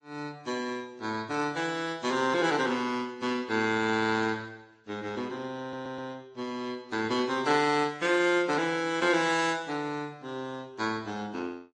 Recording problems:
lossy codec; AAC, then MP3, log-spectral distance 3 dB, nothing above 8.7 kHz
audio stuttering; at 5.5 s

